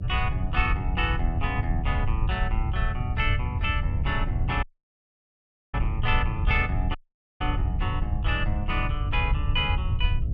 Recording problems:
mains hum; 60 Hz, harmonics up to 720 Hz, SNR 14 dB
rumble; below 96 Hz, SNR -2 dB
audio cutting out; at 4.5 s for 1 s and at 7 s

